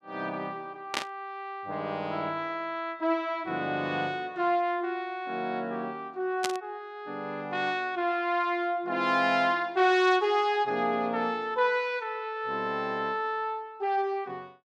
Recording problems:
static burst; at 1 s and at 6.5 s; peak +4 dB vs average level

